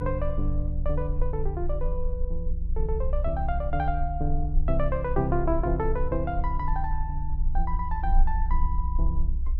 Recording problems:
rumble; below 58 Hz, strongest tone 22 Hz, SNR 0 dB

